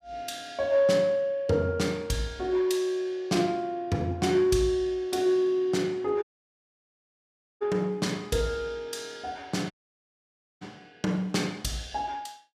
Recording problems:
audio cutting out; at 6 s for 1.5 s and at 9.5 s for 1 s

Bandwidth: 15 kHz